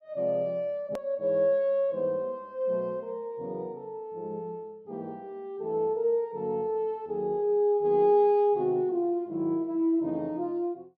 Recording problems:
click at an edit; at 1 s

